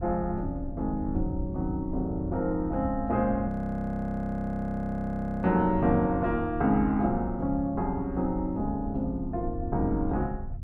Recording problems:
wind on the microphone; below 98 Hz, SNR 9 dB
audio freezing; at 3.5 s for 2 s

